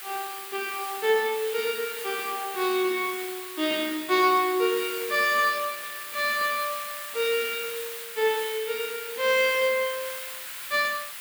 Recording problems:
hiss; SNR 9 dB

